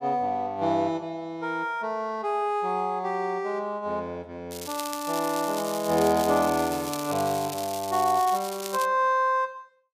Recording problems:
crackle; from 4.5 to 9 s; loose cable, SNR 10 dB

